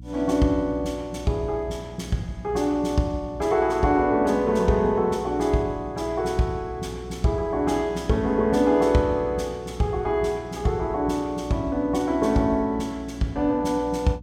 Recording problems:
hum; 60 Hz, harmonics up to 300 Hz, SNR 17 dB

